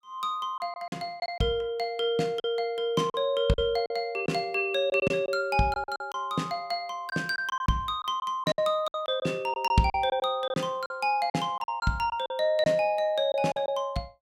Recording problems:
lost packets; 9% of the sound replaced, filled with silence

